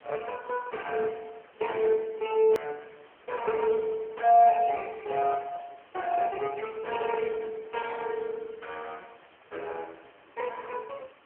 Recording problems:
telephone audio; 170 Hz to 2.3 kHz, AMR-NB
hiss; SNR 27 dB
hard cut with a click; at 2.5 s

